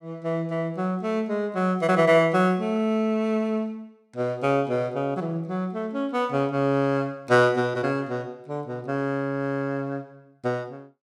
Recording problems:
none

